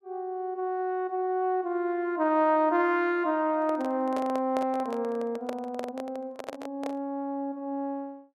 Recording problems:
microphone handling noise; from 3.5 to 7 s; peak -3 dB vs average level

